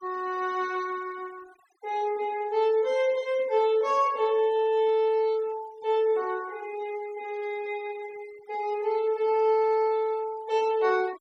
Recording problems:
noise reduction artefacts; signal-to-artefact ratio 25 dB

